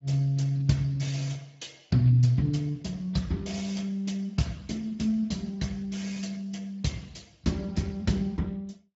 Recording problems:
treble cut off; nothing above 7.3 kHz
lossy compression; Speex, log-spectral distance 4 dB

